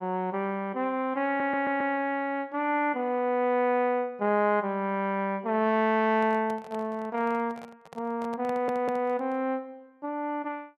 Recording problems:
audio stuttering; at 1.5 s and at 8.5 s
microphone handling noise; from 6 to 9.5 s; peak -10 dB vs average level

